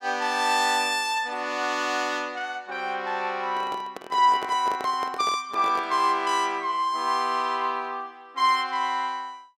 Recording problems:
microphone handling noise; from 3.5 to 6 s; peak -5 dB vs average level

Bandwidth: 16.5 kHz